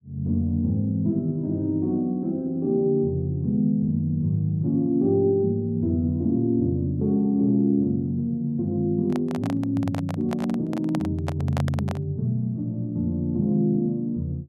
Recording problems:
microphone handling noise; from 9 to 12 s; peak -3 dB vs average level

